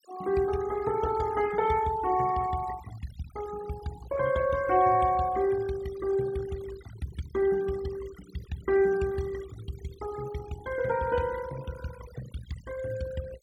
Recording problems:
denoising artefacts; signal-to-artefact ratio 16 dB

